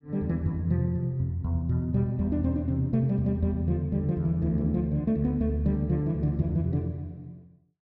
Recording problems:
none

